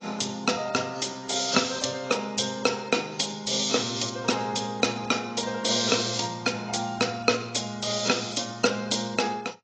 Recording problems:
codec artefacts; AAC, log-spectral distance 9 dB, nothing above 7.3 kHz

